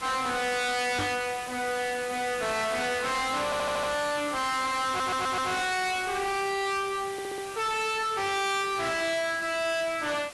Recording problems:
lossy codec; AAC, log-spectral distance 8 dB, nothing above 11.3 kHz
distorted audio; soft clipping, signal-to-distortion ratio 6 dB
hiss; slope -1 dB per octave, SNR 14 dB
microphone thump; at 1 s; peak +1 dB vs average level
audio stuttering; at 3.5 s, at 5 s and at 7 s

